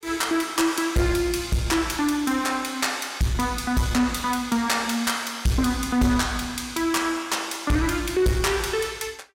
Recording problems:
distorted audio; soft clipping, signal-to-distortion ratio 11 dB

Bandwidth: 16.5 kHz